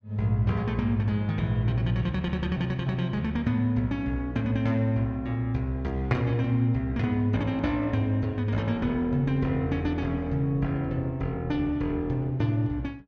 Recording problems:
none

